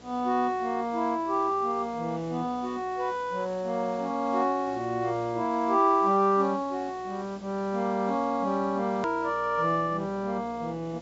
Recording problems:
treble cut off; nothing above 8 kHz
hum; 60 Hz, harmonics up to 720 Hz, SNR 24 dB
hiss; slope -3 dB per octave, SNR 24 dB
hard cut with a click; at 9 s

